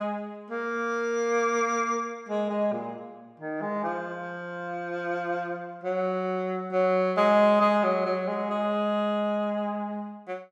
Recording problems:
none

